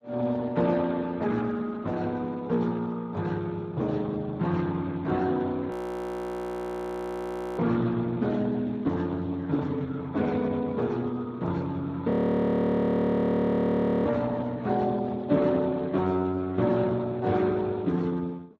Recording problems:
lossy codec; Speex, log-spectral distance 3 dB, nothing above 13.1 kHz
audio freezing; at 5.5 s for 2 s and at 12 s for 2 s

